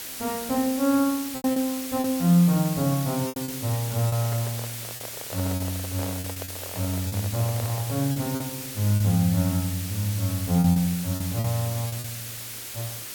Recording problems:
background hiss; SNR 8 dB
packet loss; 8% of the sound replaced, filled with repeated pitch periods
handling noise; from 4 to 8 s; peak -6 dB vs average level

